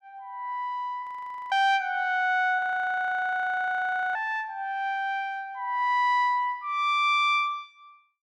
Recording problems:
audio freezing; at 1 s and at 2.5 s for 1.5 s

